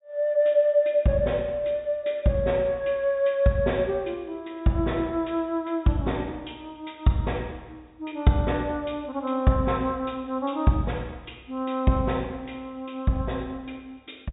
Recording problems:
low-pass filter; nothing above 4 kHz

